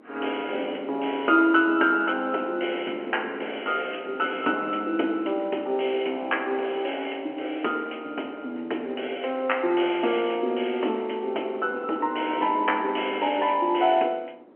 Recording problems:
telephone audio; 240 Hz to 3.1 kHz, G.711
wind noise; below 570 Hz, SNR 18 dB

